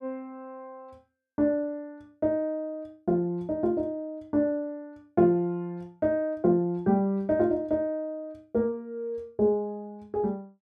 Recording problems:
none

